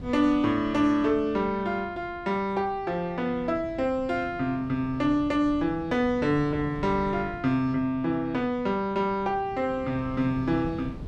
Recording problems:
wind noise; below 230 Hz, SNR 17 dB

